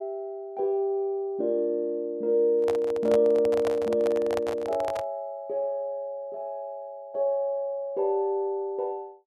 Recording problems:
handling noise; from 2.5 to 5 s; peak -2 dB vs average level

